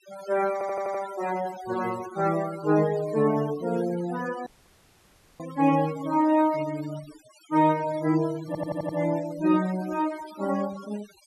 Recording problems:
denoising artefacts; signal-to-artefact ratio 17 dB
audio stuttering; at 0.5 s and at 8.5 s
dropout; at 4.5 s for 1 s

